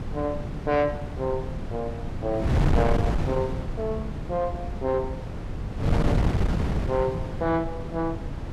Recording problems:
distortion; soft clipping, signal-to-distortion ratio 12 dB
wind on the microphone; below 220 Hz, SNR 0 dB

